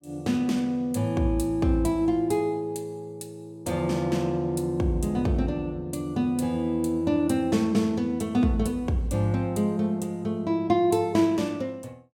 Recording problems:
none

